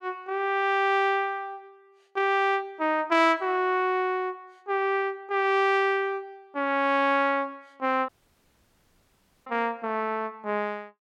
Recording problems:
audio cutting out; at 8 s for 1.5 s

